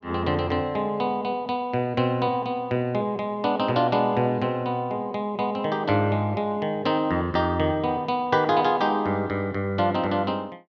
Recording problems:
none

